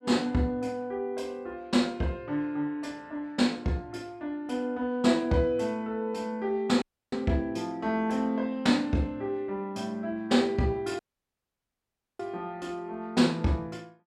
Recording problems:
dropout; at 7 s and at 11 s for 1 s

